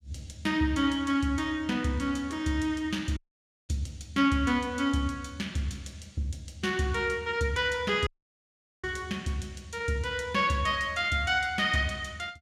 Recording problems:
audio cutting out; at 3 s for 0.5 s and at 8 s for 1 s

